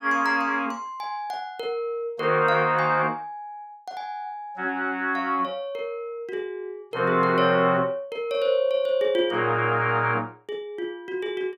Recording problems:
none

